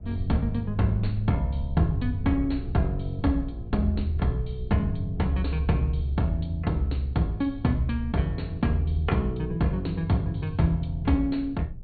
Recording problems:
treble cut off; nothing above 4.5 kHz
rumble; below 84 Hz, SNR 13 dB

